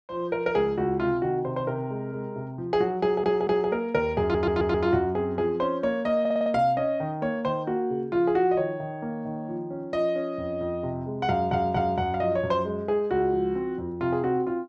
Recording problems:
audio stuttering; 4 times, first at 3 s

